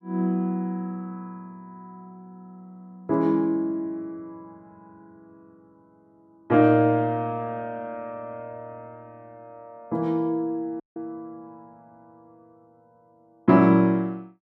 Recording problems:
audio cutting out; at 11 s

